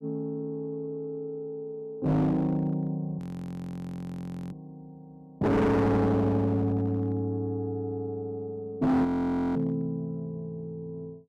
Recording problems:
distortion; hard clipping, signal-to-distortion ratio 7 dB
frozen audio; at 3 s for 1.5 s and at 9 s for 0.5 s

